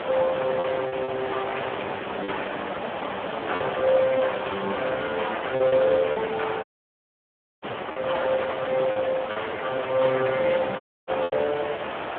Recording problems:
phone line; 240 Hz to 3.5 kHz, Speex
background hiss; SNR 7 dB
wind on the microphone; below 660 Hz, SNR 21 dB
lost packets; 5% of the sound replaced, filled with repeated pitch periods
dropout; at 6.5 s for 1 s and at 11 s

